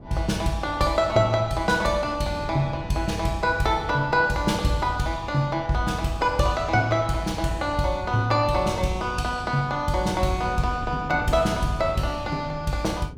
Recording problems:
wind noise; below 250 Hz, SNR 15 dB

